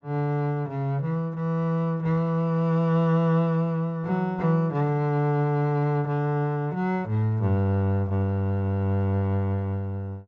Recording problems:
low-pass filter; nothing above 8 kHz

